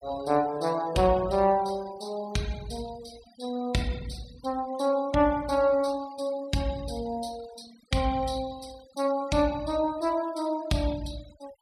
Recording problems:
noise reduction artefacts; signal-to-artefact ratio 21 dB

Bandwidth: 14.5 kHz